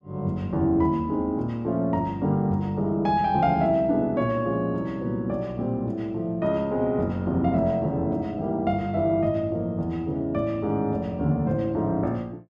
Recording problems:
none

